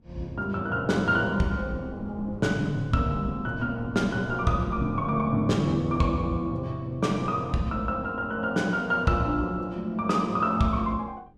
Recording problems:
wind noise; below 260 Hz, SNR 18 dB

